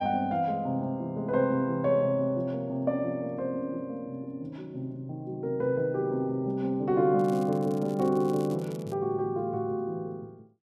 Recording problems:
crackling; from 7 to 9 s; loose cable, SNR 24 dB

